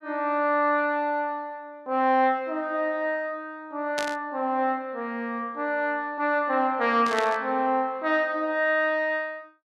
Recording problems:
static burst; at 4 s and at 7 s; peak -2 dB vs average level

